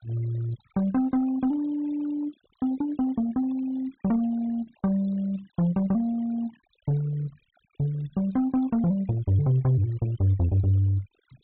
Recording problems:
treble missing; nothing above 4 kHz
denoising artefacts; signal-to-artefact ratio 24 dB

